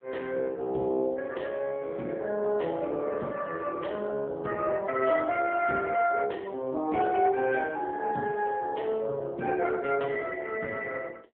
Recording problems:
phone line; 190 Hz to 3 kHz, AMR-NB

